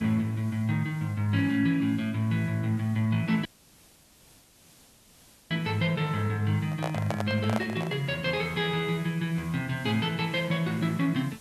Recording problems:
background hiss; SNR 25 dB
dropout; at 3.5 s for 2 s
microphone handling noise; from 6.5 to 8 s; peak 0 dB vs average level

